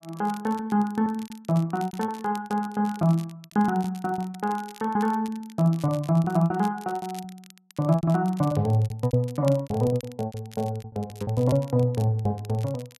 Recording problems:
crackle; vinyl, SNR 23 dB
lost packets; 17% of the sound replaced, filled with repeated pitch periods

